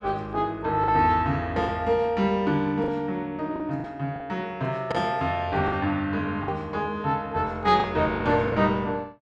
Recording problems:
lost packets; 5% of the sound replaced, filled with the last packet

